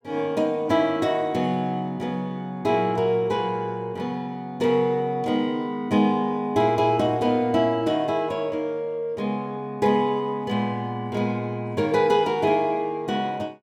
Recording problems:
none

